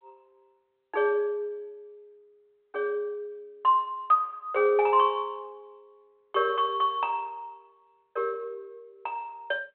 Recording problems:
phone line; 340 Hz to 3.4 kHz, G.726

